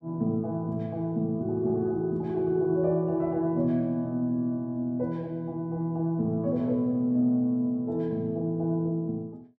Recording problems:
none

